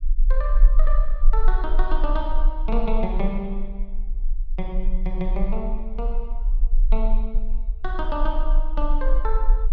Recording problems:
rumble; below 34 Hz, strongest tone 22 Hz, SNR -5 dB

